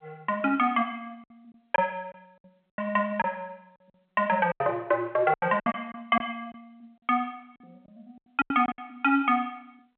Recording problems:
telephone audio; 300 Hz to 3.5 kHz, G.711
packet loss; 9% of the sound replaced, filled with silence

